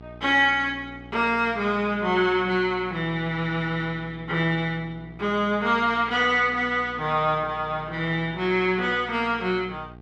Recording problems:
mains hum; 60 Hz, harmonics up to 1.3 kHz, SNR 20 dB

